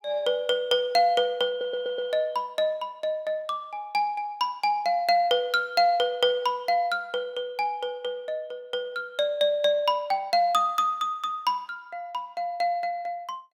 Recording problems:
stutter; at 1.5 s

